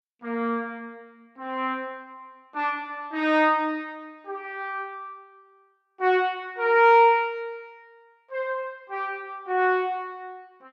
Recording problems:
none

